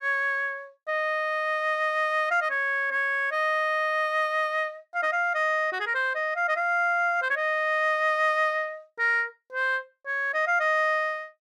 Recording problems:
none

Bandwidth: 14.5 kHz